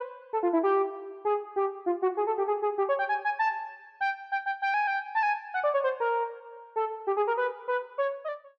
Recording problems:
none

